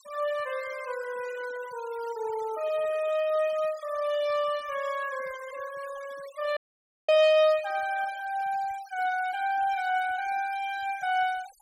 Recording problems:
denoising artefacts; signal-to-artefact ratio 19 dB
audio cutting out; at 6.5 s for 0.5 s

